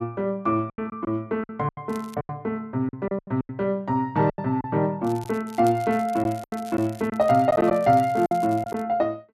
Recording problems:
packet loss; 10% of the sound replaced, filled with silence
crackle; at 2 s and from 5 to 9 s; loose cable, SNR 23 dB

